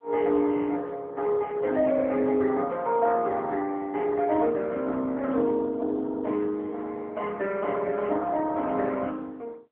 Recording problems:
telephone audio; 260 Hz to 3 kHz, AMR-NB

